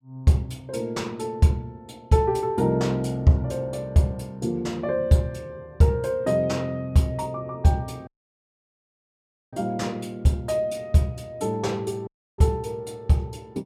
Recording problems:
dropout; at 8 s for 1.5 s and at 12 s

